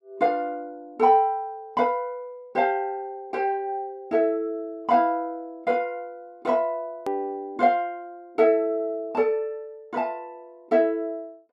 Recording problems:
click at an edit; at 7 s

